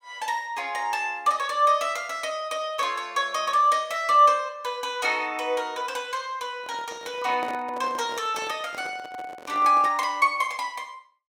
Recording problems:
handling noise; from 6.5 to 10 s; peak -8 dB vs average level

